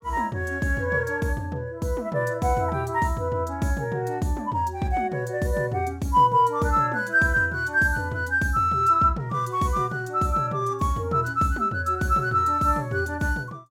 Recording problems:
none

